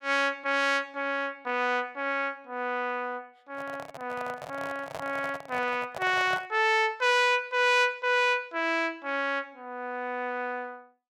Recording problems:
handling noise; from 3.5 to 6.5 s; peak -5 dB vs average level

